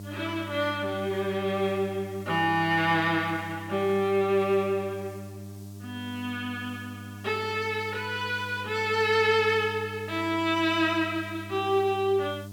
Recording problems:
electrical hum; 50 Hz, harmonics up to 700 Hz, SNR 15 dB
hiss; SNR 26 dB

